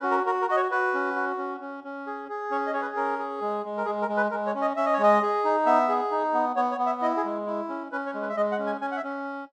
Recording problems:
none

